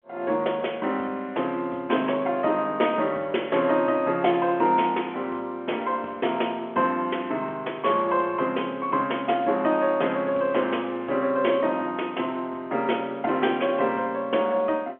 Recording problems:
telephone audio; 240 Hz to 3.3 kHz, G.711

